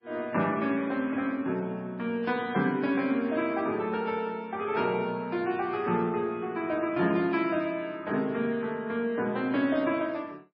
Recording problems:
codec artefacts; MP3, log-spectral distance 2 dB, nothing above 5 kHz

